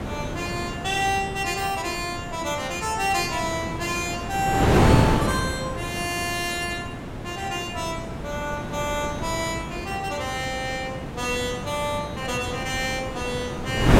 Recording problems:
wind on the microphone; below 660 Hz, SNR 1 dB

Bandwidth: 16 kHz